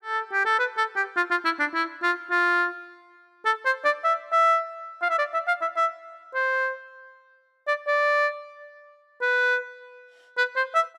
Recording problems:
none

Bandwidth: 14.5 kHz